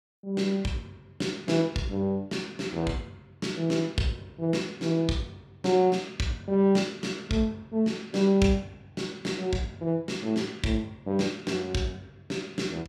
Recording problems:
none

